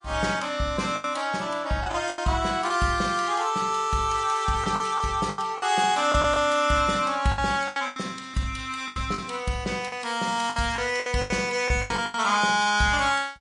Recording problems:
lossy compression; MP3, log-spectral distance 3 dB, nothing above 10.4 kHz
lost packets; 10% of the sound replaced, filled with the last packet

